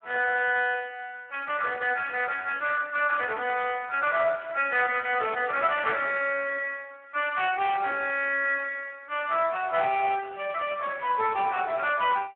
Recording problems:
telephone audio; 320 Hz to 3.1 kHz, Speex

